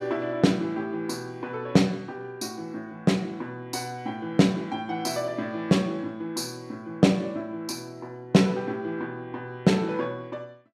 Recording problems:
none

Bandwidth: 15.5 kHz